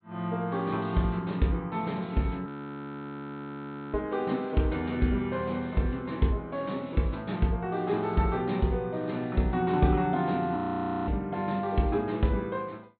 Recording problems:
low-pass filter; nothing above 4 kHz
audio freezing; at 2.5 s for 1.5 s and at 11 s for 0.5 s

